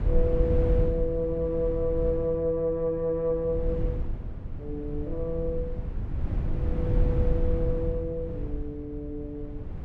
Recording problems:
low-frequency rumble; below 94 Hz, SNR 2 dB

